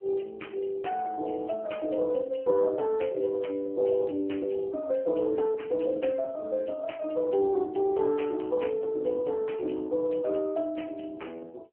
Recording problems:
telephone audio; 240 Hz to 3.2 kHz, AMR-NB

